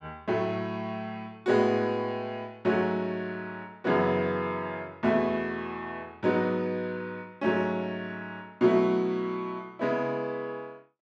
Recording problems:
none

